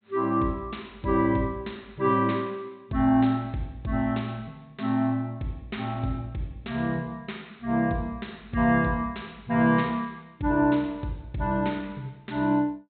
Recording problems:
low-pass filter; nothing above 4 kHz

